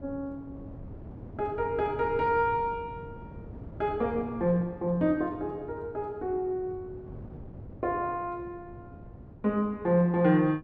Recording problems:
wind noise; below 280 Hz, SNR 16 dB

